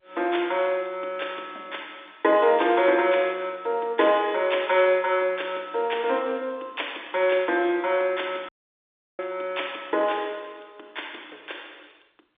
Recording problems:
telephone audio; 280 Hz to 3.6 kHz, G.711
audio cutting out; at 8.5 s for 0.5 s

